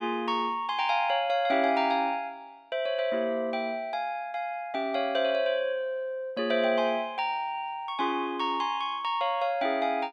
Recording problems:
none

